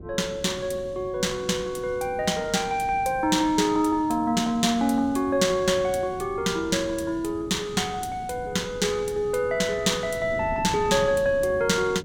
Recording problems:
wind on the microphone; below 280 Hz, SNR 16 dB

